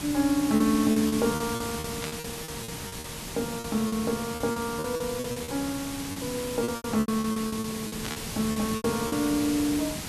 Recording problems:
hiss; slope -2 dB per octave, SNR 6 dB
packet loss; 15% of the sound replaced, filled with repeated pitch periods
static burst; at 2 s and at 8 s; peak -3 dB vs average level

